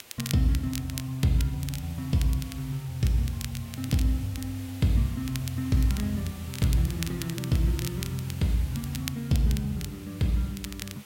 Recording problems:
hum; 60 Hz, harmonics up to 2.6 kHz, SNR 38 dB
hiss; slope -1 dB per octave, SNR 18 dB
crackle; vinyl, SNR 13 dB

